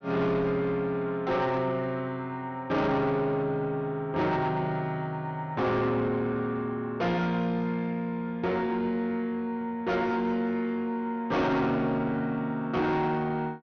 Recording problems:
treble cut off; nothing above 6.4 kHz
distortion; soft clipping, signal-to-distortion ratio 10 dB

